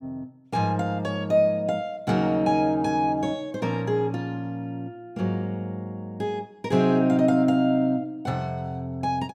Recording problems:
none

